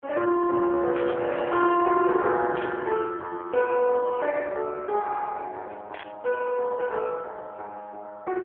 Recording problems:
phone line; 300 Hz to 3.6 kHz, AMR-NB
burst of static; at 1 s, at 2.5 s and at 6 s; peak -9 dB vs average level

